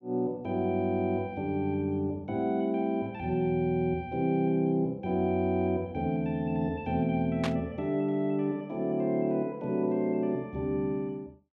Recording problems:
burst of static; at 7.5 s; peak -2 dB vs average level

